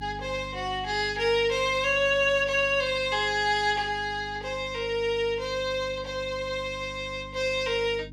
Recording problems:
hum; 50 Hz, harmonics up to 300 Hz, SNR 18 dB

